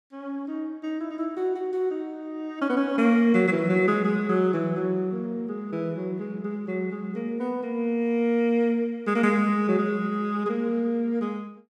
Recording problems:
none

